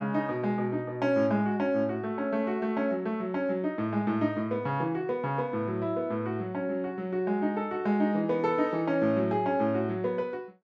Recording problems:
none

